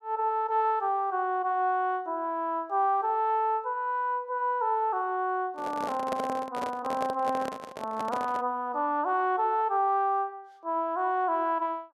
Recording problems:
microphone handling noise; from 5.5 to 8.5 s; peak -2 dB vs average level

